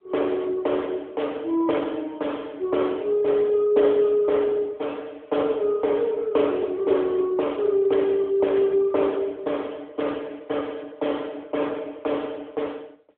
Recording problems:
phone line; 300 Hz to 3.5 kHz, AMR-NB

